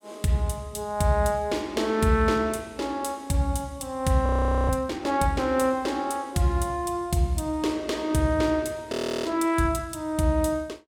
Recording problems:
frozen audio; at 4.5 s and at 9 s

